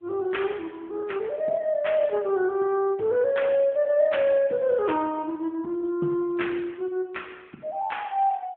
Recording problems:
telephone audio; 170 Hz to 3.5 kHz, AMR-NB

